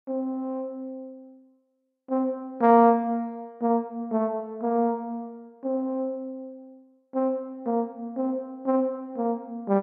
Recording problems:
none

